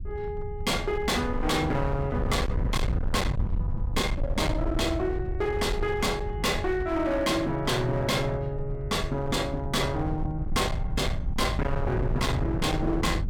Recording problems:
distortion; hard clipping, uneven, signal-to-distortion ratio 7 dB
low-frequency rumble; below 120 Hz, SNR 5 dB

